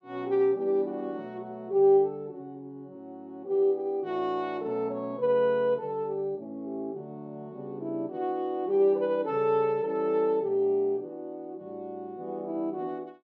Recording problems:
none

